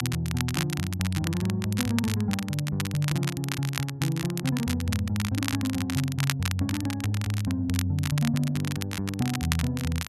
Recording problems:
crackle; vinyl, SNR 7 dB

